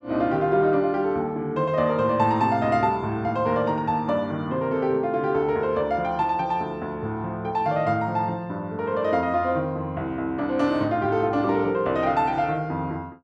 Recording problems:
none

